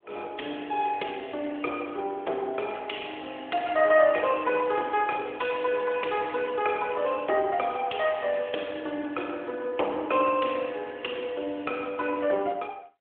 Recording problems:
telephone audio; 320 Hz to 3.5 kHz, AMR-NB

